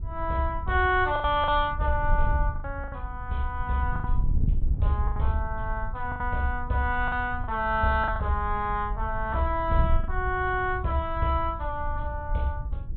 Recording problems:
low-pass filter; nothing above 4 kHz
wind on the microphone; below 74 Hz, SNR 5 dB
packet loss; 6% of the sound replaced, filled with the last packet

